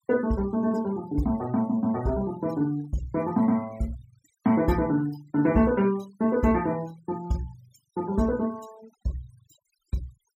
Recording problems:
noise reduction artefacts; signal-to-artefact ratio 22 dB

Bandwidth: 16 kHz